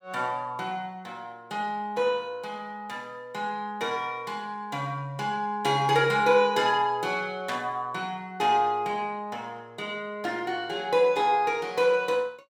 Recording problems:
burst of static; at 7.5 s; peak -5 dB vs average level

